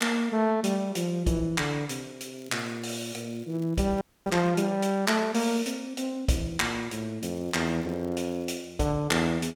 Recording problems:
crackle; from 2.5 to 4.5 s and from 7.5 to 8.5 s; loose cable, SNR 29 dB
frozen audio; at 4 s

